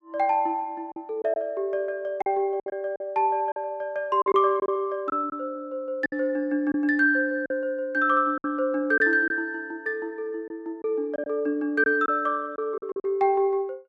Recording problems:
packet loss; 7% of the sound replaced, filled with silence

